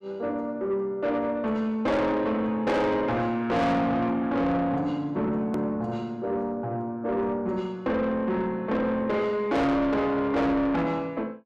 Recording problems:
distorted audio; soft clipping, signal-to-distortion ratio 7 dB
edit click; at 5.5 s

